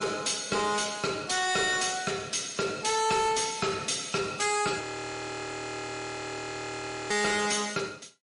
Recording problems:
codec artefacts; MP3, log-spectral distance 6 dB, nothing above 10.1 kHz
distorted audio; soft clipping, signal-to-distortion ratio 7 dB
frozen audio; at 5 s for 2.5 s

